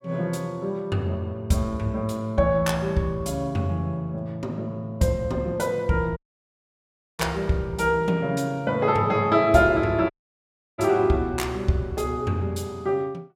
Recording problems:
dropout; at 6 s for 1 s and at 10 s for 0.5 s

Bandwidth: 16 kHz